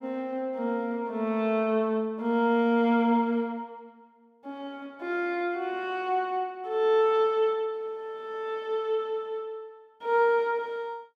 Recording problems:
none

